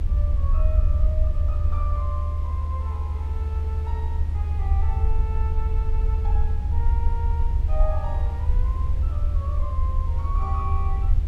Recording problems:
background hiss; slope -6 dB per octave, SNR 10 dB
rumble; below 76 Hz, SNR -13 dB

